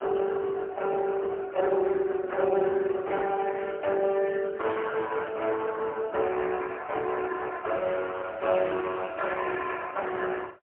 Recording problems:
telephone audio; 300 Hz to 3.3 kHz, AMR-NB, then MP3

